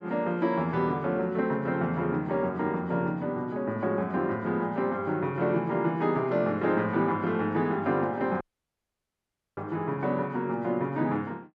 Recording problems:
dropout; at 8.5 s for 1 s

